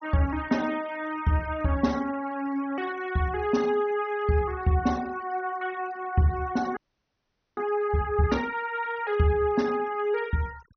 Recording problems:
treble missing; nothing above 6.2 kHz
denoising artefacts; signal-to-artefact ratio 22 dB
audio freezing; at 7 s for 1 s

